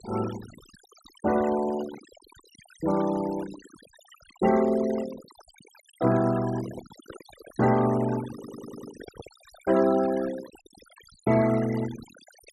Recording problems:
noise reduction artefacts; signal-to-artefact ratio 17 dB
handling noise; from 6.5 to 9.5 s; peak -11 dB vs average level
audio stuttering; at 8.5 s

